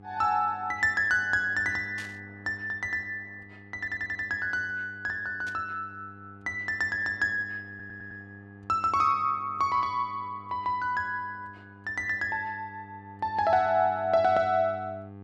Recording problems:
hum; 50 Hz, harmonics up to 1.2 kHz, SNR 20 dB
burst of static; at 2 s and at 5.5 s; peak -11 dB vs average level
audio stuttering; at 4 s and at 7.5 s

